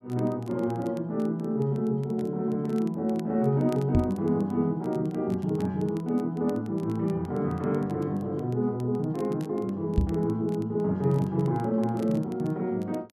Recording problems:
crackle; vinyl, SNR 28 dB
microphone thump; at 4 s and at 10 s; peak +7 dB vs average level

